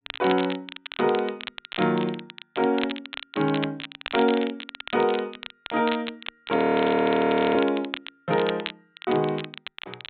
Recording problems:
low-pass filter; nothing above 4 kHz
crackling; vinyl, SNR 11 dB
frozen audio; at 6.5 s for 1 s

